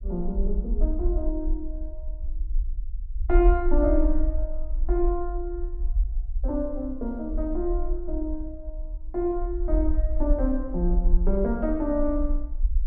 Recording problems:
low-frequency rumble; below 46 Hz, SNR 1 dB

